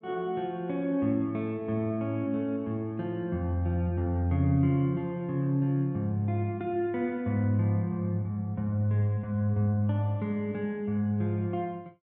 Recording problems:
none

